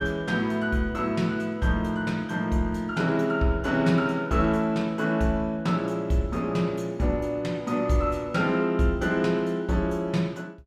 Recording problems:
none

